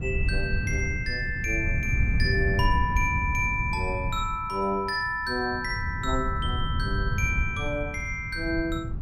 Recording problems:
wind noise; below 110 Hz, SNR 3 dB

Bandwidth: 16 kHz